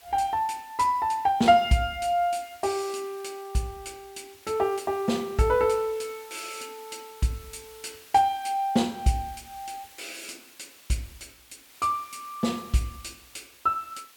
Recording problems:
background hiss; slope +1 dB per octave, SNR 23 dB

